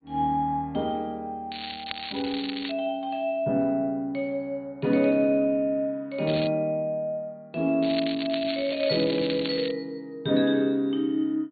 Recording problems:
treble missing; nothing above 3.9 kHz
lossy compression; MP3, log-spectral distance 4 dB
crackle; from 1.5 to 2.5 s, at 6.5 s and from 8 to 9.5 s; loose cable, SNR 9 dB

